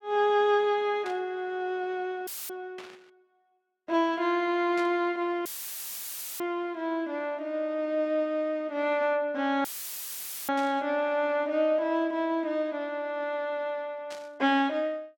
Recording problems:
burst of static; 5 times, first at 1 s; peak -10 dB vs average level
dropout; at 2.5 s, at 5.5 s for 1 s and at 9.5 s for 1 s; filled with static

